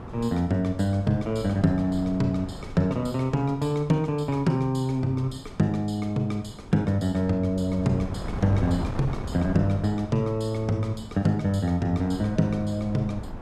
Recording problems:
wind on the microphone; below 350 Hz, SNR 13 dB

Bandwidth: 13.5 kHz